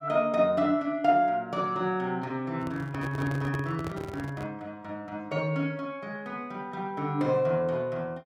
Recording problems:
handling noise; from 2.5 to 4.5 s; peak -4 dB vs average level

